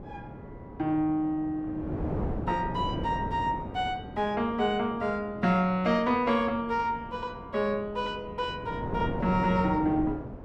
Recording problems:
wind noise; below 440 Hz, SNR 9 dB

